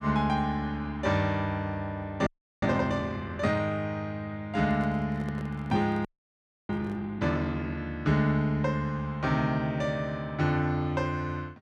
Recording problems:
frozen audio; at 2.5 s and at 6 s for 0.5 s
handling noise; from 4.5 to 7 s; peak -9 dB vs average level

